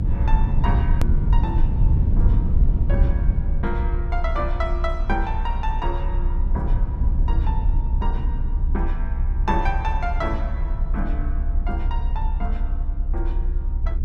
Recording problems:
low-frequency rumble; below 66 Hz, strongest tone 28 Hz, SNR -7 dB
click at an edit; at 1 s

